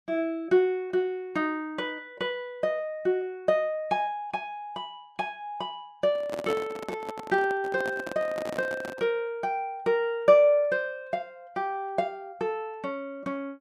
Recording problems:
microphone handling noise; from 6 to 9 s; peak -2 dB vs average level

